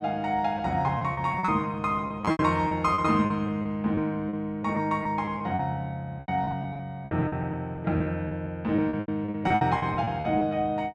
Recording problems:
packet loss; 14% of the sound replaced, filled with repeated pitch periods

